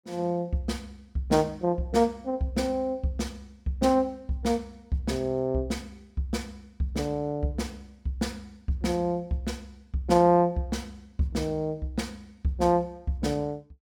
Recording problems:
none

